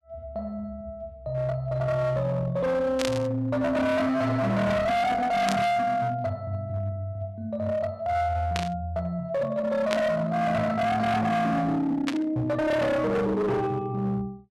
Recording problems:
distortion; hard clipping, uneven, signal-to-distortion ratio 7 dB
burst of static; 5 times, first at 3 s; peak +1 dB vs average level

